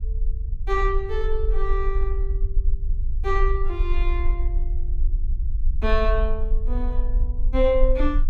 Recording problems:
rumble; below 46 Hz, strongest tone 20 Hz, SNR -1 dB

